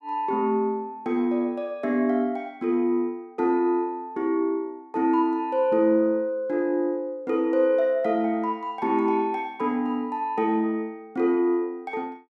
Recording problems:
none

